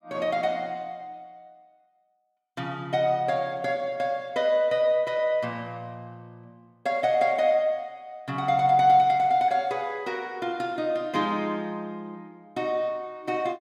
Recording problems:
none

